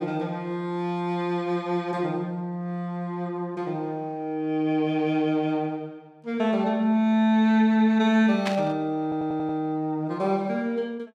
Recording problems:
static burst; at 8.5 s; peak -1 dB vs average level
stutter; at 9 s

